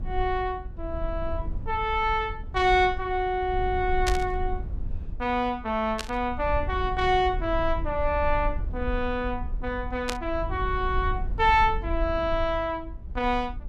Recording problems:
low-frequency rumble; below 64 Hz, SNR 8 dB
burst of static; at 4 s, at 6 s and at 10 s; peak +1 dB vs average level

